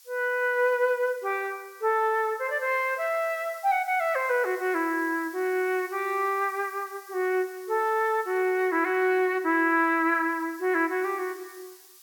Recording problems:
background hiss; SNR 23 dB

